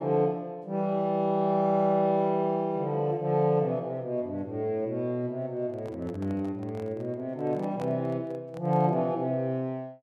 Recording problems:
microphone handling noise; from 5.5 to 9 s; peak -9 dB vs average level

